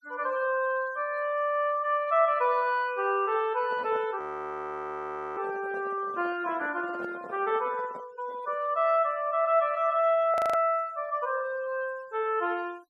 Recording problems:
denoising artefacts; signal-to-artefact ratio 26 dB
handling noise; from 3.5 to 8.5 s; peak -9 dB vs average level
audio freezing; at 4 s for 1 s and at 10 s

